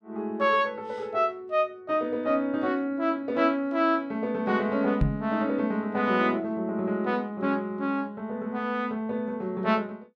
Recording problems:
microphone bump; at 5 s; peak +6 dB vs average level

